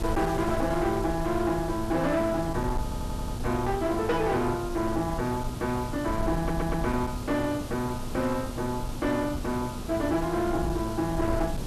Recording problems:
distortion; hard clipping, uneven, signal-to-distortion ratio 11 dB
background hiss; SNR 12 dB
rumble; below 120 Hz, SNR 9 dB
audio stuttering; at 3 s and at 6.5 s

